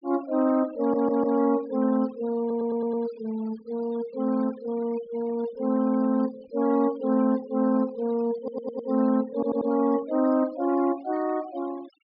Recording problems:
low-pass filter; nothing above 5.5 kHz
denoising artefacts; signal-to-artefact ratio 21 dB
stutter; 4 times, first at 1 s

